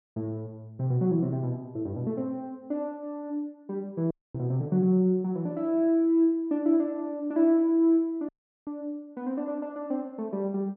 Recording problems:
audio cutting out; at 4 s and at 8.5 s

